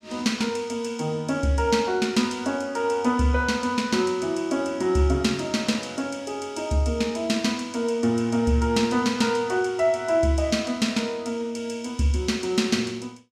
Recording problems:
none

